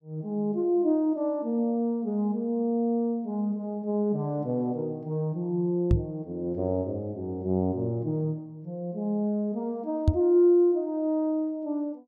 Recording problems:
knock on the microphone; at 6 s and at 10 s; peak +9 dB vs average level

